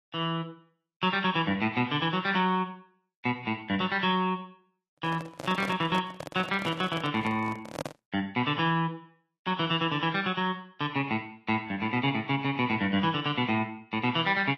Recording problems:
lossy compression; Vorbis, log-spectral distance 3 dB
microphone handling noise; from 5 to 8 s; peak -2 dB vs average level

